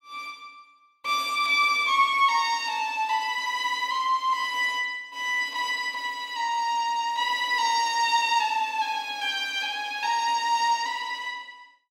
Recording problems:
none

